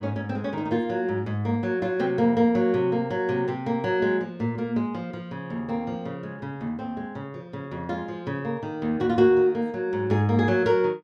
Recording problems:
none

